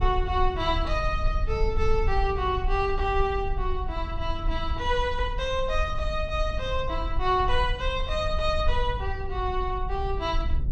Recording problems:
rumble; below 56 Hz, SNR 4 dB

